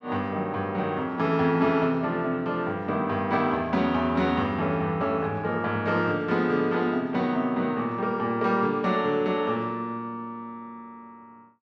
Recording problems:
none

